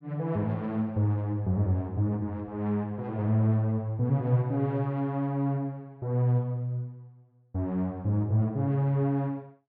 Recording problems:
none

